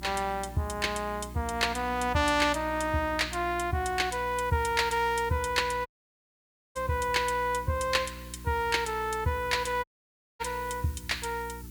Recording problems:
mains hum; 60 Hz, harmonics up to 360 Hz, SNR 15 dB
hiss; SNR 22 dB
dropout; at 6 s for 1 s and at 10 s for 0.5 s

